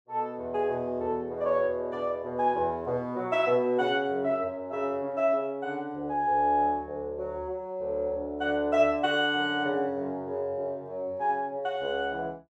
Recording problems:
none

